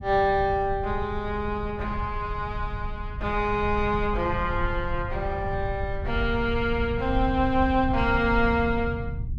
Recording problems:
rumble; below 100 Hz, SNR 7 dB

